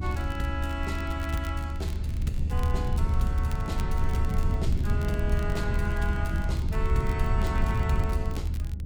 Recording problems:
rumble; below 90 Hz, SNR -6 dB
crackle; vinyl, SNR 16 dB

